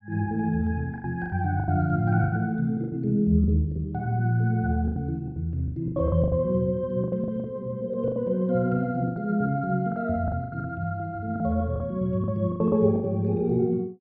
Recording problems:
packet loss; 13% of the sound replaced, filled with the last packet

